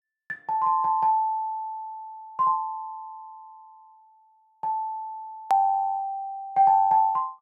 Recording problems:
click at an edit; at 5.5 s

